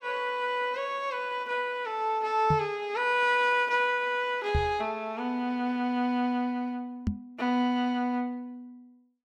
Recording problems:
microphone bump; at 2.5 s, at 4.5 s and at 7 s; peak +3 dB vs average level

